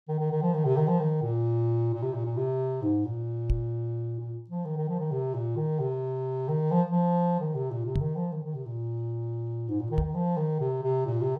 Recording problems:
microphone bump; at 3.5 s, at 8 s and at 10 s; peak +4 dB vs average level

